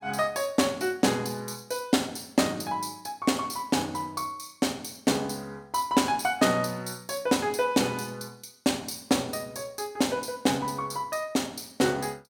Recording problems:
none

